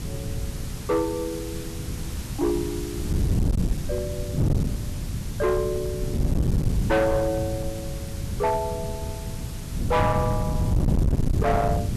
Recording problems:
distorted audio; hard clipping, signal-to-distortion ratio 7 dB
background hiss; slope -1 dB per octave, SNR 14 dB
wind noise; below 170 Hz, SNR 1 dB

